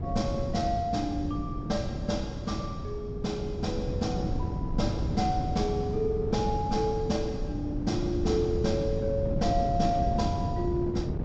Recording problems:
treble missing; nothing above 8 kHz
wind noise; below 210 Hz, SNR 2 dB

